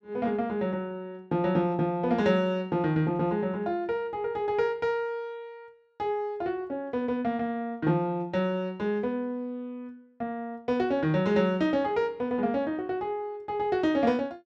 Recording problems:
none

